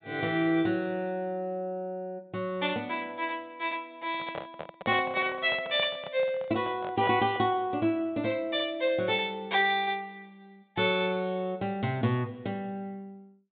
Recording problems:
treble missing; nothing above 4 kHz
microphone handling noise; from 4 to 7.5 s; peak -4 dB vs average level

